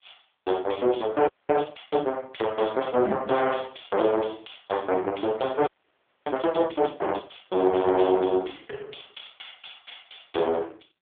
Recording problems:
telephone audio; 280 Hz to 3.5 kHz, AMR-NB
frozen audio; at 1.5 s and at 5.5 s for 0.5 s

